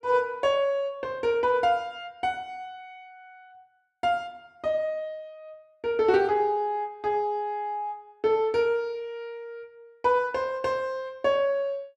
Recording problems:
none

